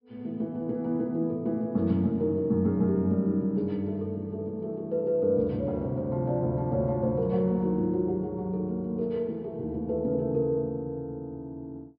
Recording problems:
treble missing; nothing above 5.5 kHz

